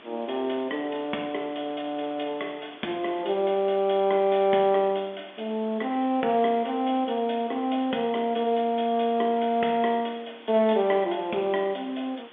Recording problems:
telephone audio; 220 Hz to 3.5 kHz, G.711
hiss; SNR 22 dB

